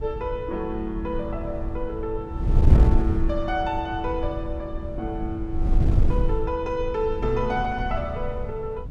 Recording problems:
wind noise; below 86 Hz, SNR -1 dB

